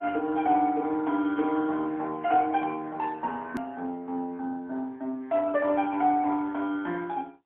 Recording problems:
phone line; 190 Hz to 3.6 kHz, AMR-NB, then MP3
edit click; at 3.5 s

